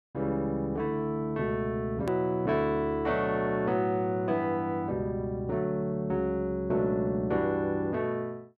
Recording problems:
hard cut with a click; at 2 s

